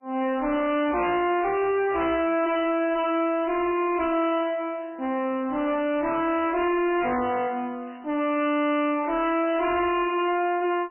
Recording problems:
codec artefacts; MP3, log-spectral distance 4 dB, nothing above 2.4 kHz
distorted audio; soft clipping, signal-to-distortion ratio 6 dB

